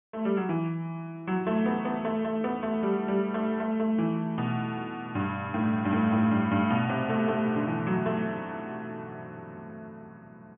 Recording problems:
treble cut off; nothing above 3.4 kHz

